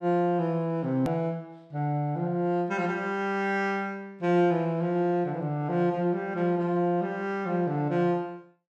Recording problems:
click at an edit; at 1 s

